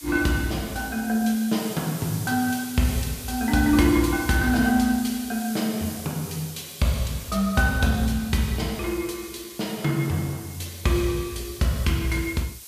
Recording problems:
hiss; slope +3 dB per octave, SNR 13 dB

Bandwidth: 14.5 kHz